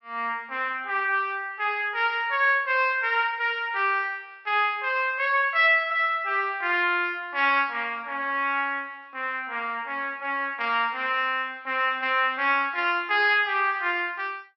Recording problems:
low-pass filter; nothing above 5.6 kHz

